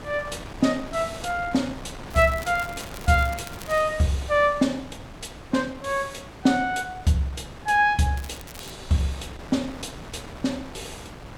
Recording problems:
wind on the microphone; below 1.2 kHz, SNR 15 dB
crackle; from 2 to 4 s and at 8 s; loose cable, SNR 18 dB

